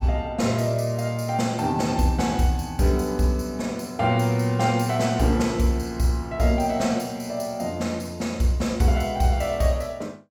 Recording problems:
none

